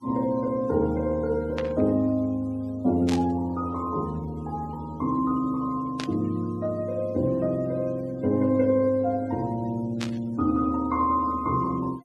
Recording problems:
noise reduction artefacts; signal-to-artefact ratio 27 dB
burst of static; 4 times, first at 1.5 s; peak -3 dB vs average level

